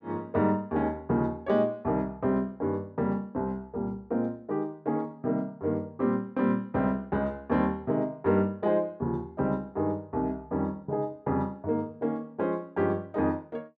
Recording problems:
none

